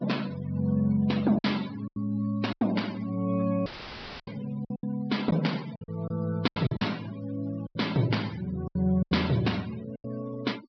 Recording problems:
treble cut off; nothing above 5.5 kHz
noise reduction artefacts; signal-to-artefact ratio 18 dB
packet loss; 9% of the sound replaced, filled with silence
audio cutting out; at 3.5 s for 0.5 s; filled with static

